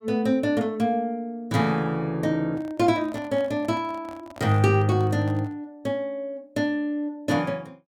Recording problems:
microphone handling noise; from 2.5 to 5.5 s; peak -12 dB vs average level

